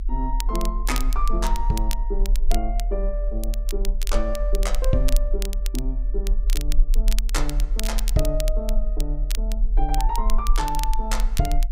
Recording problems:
low-frequency rumble; below 40 Hz, SNR -4 dB
crackling; vinyl, SNR 7 dB

